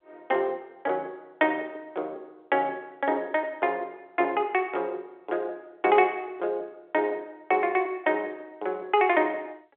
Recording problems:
phone line; 320 Hz to 3.7 kHz, G.711

